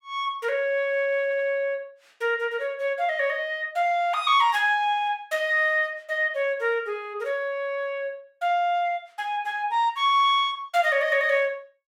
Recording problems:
stutter; at 1 s

